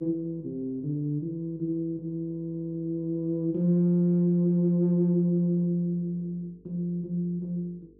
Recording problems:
hum; 50 Hz, harmonics up to 450 Hz, SNR 30 dB

